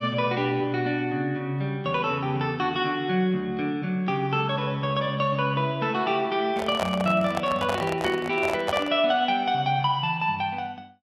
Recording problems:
handling noise; from 6.5 to 9 s; peak +2 dB vs average level

